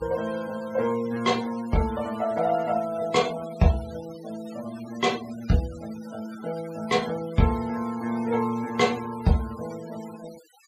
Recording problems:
noise reduction artefacts; signal-to-artefact ratio 17 dB

